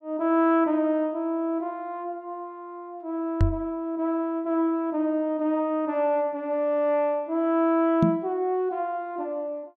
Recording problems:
microphone bump; at 3.5 s and at 8 s; peak +7 dB vs average level

